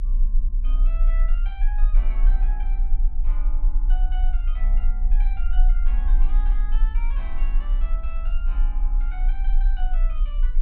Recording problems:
low-frequency rumble; below 34 Hz, strongest tone 30 Hz, SNR -19 dB

